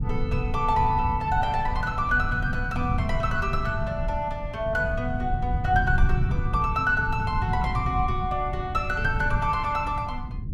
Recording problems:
low-frequency rumble; below 130 Hz, SNR 3 dB

